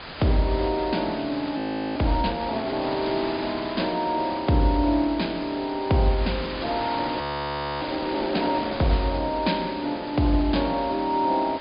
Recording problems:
treble cut off; nothing above 5 kHz
background hiss; SNR 10 dB
audio freezing; at 1.5 s and at 7 s for 0.5 s

